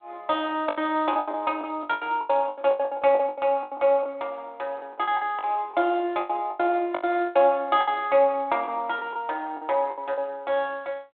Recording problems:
phone line; 240 Hz to 3.7 kHz, G.726
lost packets; 16% of the sound replaced, filled with the last packet

